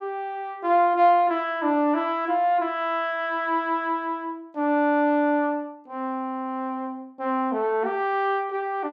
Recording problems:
none

